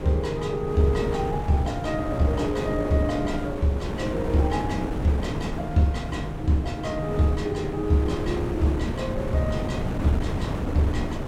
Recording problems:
wind noise; below 390 Hz, SNR 5 dB

